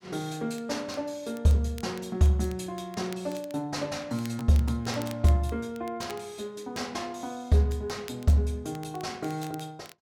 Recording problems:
crackle; vinyl, SNR 22 dB

